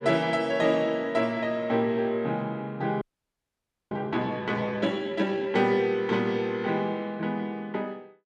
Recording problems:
audio freezing; at 3 s for 1 s

